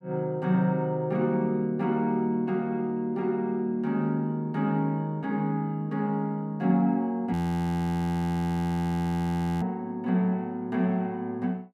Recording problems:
frozen audio; at 7.5 s for 2.5 s

